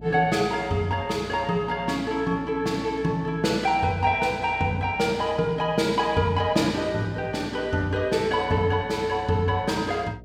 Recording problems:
hum; 60 Hz, harmonics up to 720 Hz, SNR 21 dB

